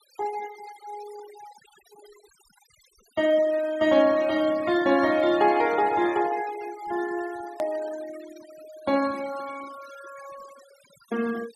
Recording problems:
denoising artefacts; signal-to-artefact ratio 19 dB
hard cut with a click; at 7.5 s

